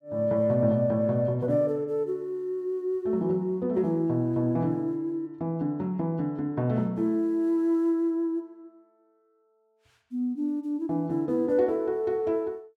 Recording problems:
none

